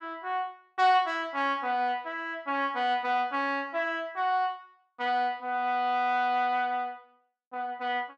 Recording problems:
none

